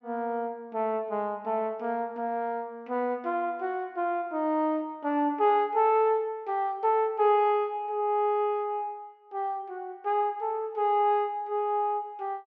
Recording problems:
none

